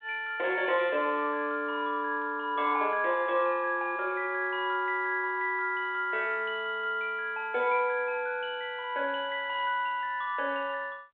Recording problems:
phone line; 340 Hz to 3.7 kHz, G.726

